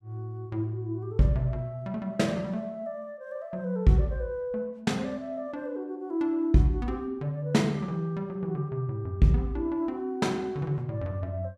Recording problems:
none

